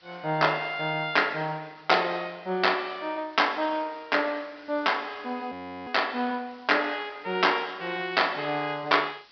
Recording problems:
treble cut off; nothing above 5.5 kHz
background hiss; SNR 29 dB
frozen audio; at 5.5 s

